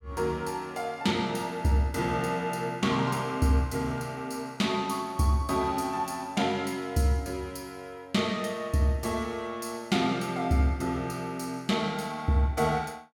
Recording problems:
none

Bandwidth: 18 kHz